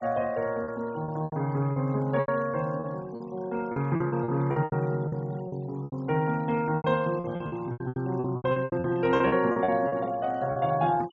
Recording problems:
treble missing; nothing above 8 kHz
noise reduction artefacts; signal-to-artefact ratio 24 dB
packet loss; 15% of the sound replaced, filled with repeated pitch periods

